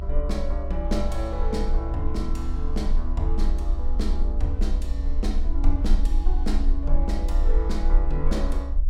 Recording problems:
hum; 60 Hz, harmonics up to 600 Hz, SNR 25 dB
low-frequency rumble; below 44 Hz, strongest tone 22 Hz, SNR -5 dB

